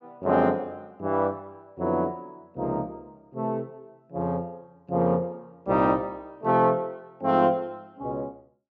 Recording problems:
treble cut off; nothing above 8 kHz

